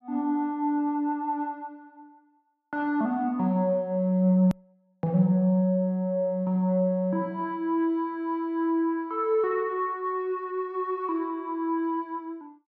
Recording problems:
click at an edit; at 4.5 s

